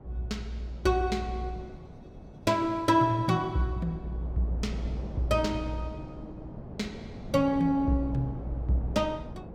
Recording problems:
wind noise; below 370 Hz, SNR 13 dB

